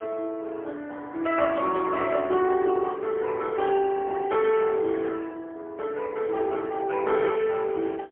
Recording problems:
telephone audio; 280 Hz to 3.3 kHz, AMR-NB, then MP3

